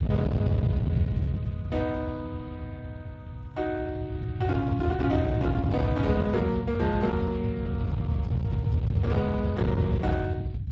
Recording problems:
codec artefacts; Speex, log-spectral distance 2 dB, nothing above 7.3 kHz
distorted audio; hard clipping, uneven, signal-to-distortion ratio 11 dB
rumble; below 150 Hz, SNR -1 dB

